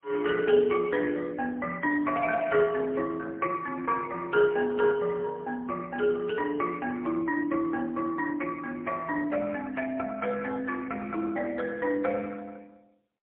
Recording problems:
phone line; 220 Hz to 2.2 kHz, AMR-NB, then MP3

